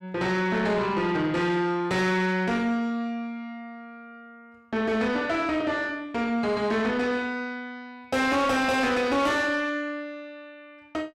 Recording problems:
distortion; soft clipping, signal-to-distortion ratio 10 dB

